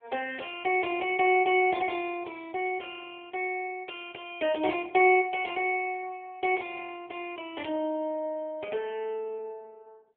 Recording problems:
phone line; 320 Hz to 3.5 kHz, AMR-NB

